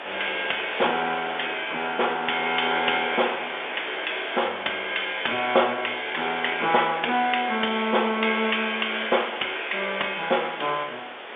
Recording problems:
phone line; 300 Hz to 3.5 kHz, G.711
hiss; SNR 10 dB

